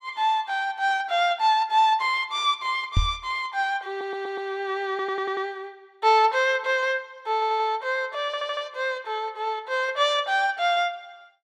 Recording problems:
knock on the microphone; at 3 s; peak +5 dB vs average level
audio stuttering; 4 times, first at 4 s

